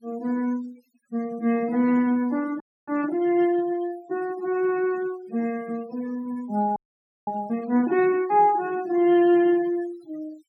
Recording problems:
noise reduction artefacts; signal-to-artefact ratio 22 dB
frozen audio; at 2.5 s and at 7 s for 0.5 s

